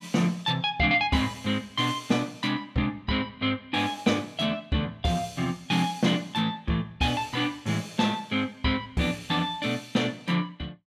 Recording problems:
none

